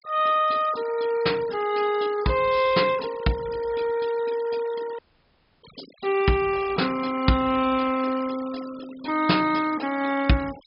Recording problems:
treble missing; nothing above 5.5 kHz
denoising artefacts; signal-to-artefact ratio 18 dB
audio cutting out; at 5 s for 0.5 s

